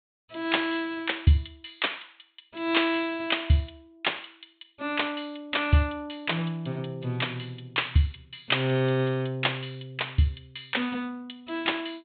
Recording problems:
treble missing; nothing above 4 kHz

